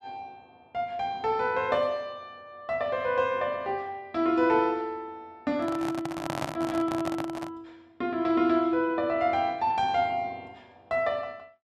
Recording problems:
microphone handling noise; from 5.5 to 7.5 s; peak 0 dB vs average level

